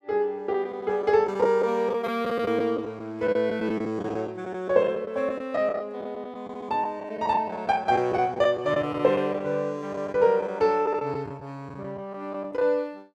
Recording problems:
lost packets; 9% of the sound replaced, filled with the last packet

